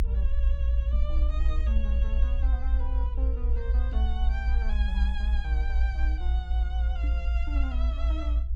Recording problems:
low-frequency rumble; below 60 Hz, strongest tone 58 Hz, SNR -14 dB
knock on the microphone; at 1 s, at 4 s and at 7 s; peak +3 dB vs average level

